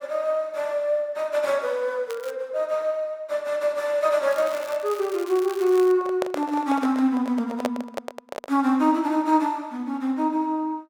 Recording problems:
crackle; at 2 s and from 4.5 to 6 s; loose cable, SNR 19 dB
microphone handling noise; from 6 to 8.5 s; peak +2 dB vs average level

